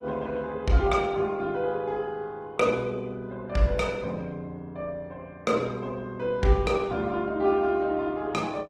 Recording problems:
lossy codec; Opus, log-spectral distance 2 dB, nothing above 14.6 kHz

